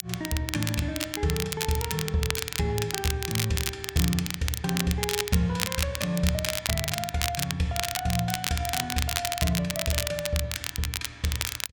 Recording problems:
crackle; vinyl, SNR 2 dB

